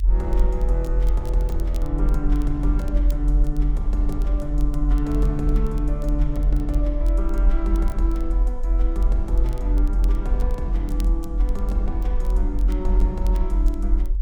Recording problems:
low-frequency rumble; below 46 Hz, strongest tone 42 Hz, SNR -6 dB
crackle; vinyl, SNR 22 dB

